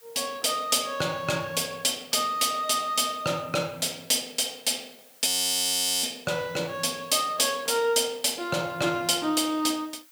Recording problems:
hiss; SNR 26 dB
frozen audio; at 5.5 s for 1 s

